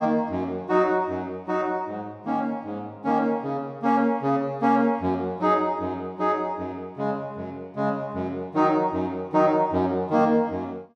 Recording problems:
none

